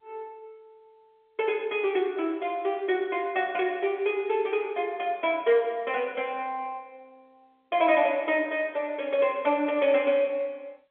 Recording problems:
telephone audio; 300 Hz to 3.5 kHz, G.711

